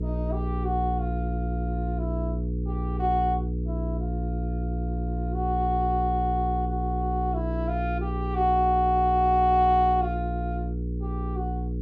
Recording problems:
hum; 60 Hz, harmonics up to 480 Hz, SNR 3 dB

